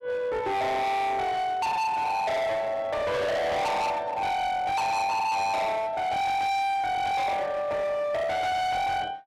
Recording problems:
distortion; hard clipping, signal-to-distortion ratio 6 dB

